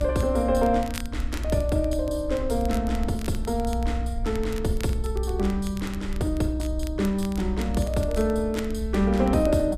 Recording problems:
low-frequency rumble; below 62 Hz, strongest tone 60 Hz, SNR 5 dB
crackle; vinyl, SNR 18 dB

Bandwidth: 14 kHz